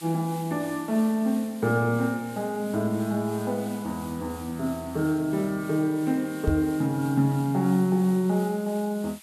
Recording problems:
background hiss; SNR 19 dB
microphone thump; at 6.5 s; peak +4 dB vs average level

